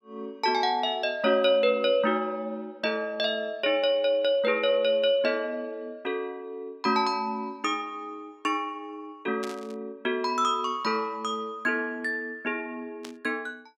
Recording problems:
static burst; at 9.5 s and at 13 s; peak -8 dB vs average level

